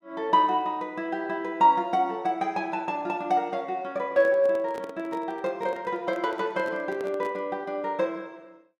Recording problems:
handling noise; from 4 to 7.5 s; peak -9 dB vs average level

